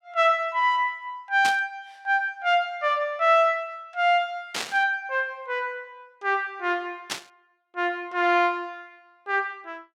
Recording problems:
static burst; at 1.5 s, at 4.5 s and at 7 s; peak 0 dB vs average level

